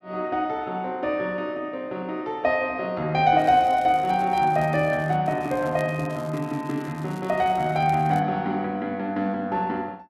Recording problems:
crackling; from 3.5 to 5 s and from 5.5 to 8 s; loose cable, SNR 25 dB

